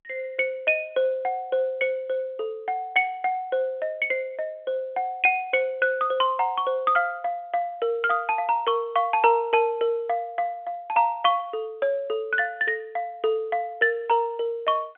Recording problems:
telephone audio; 280 Hz to 3.4 kHz, G.711

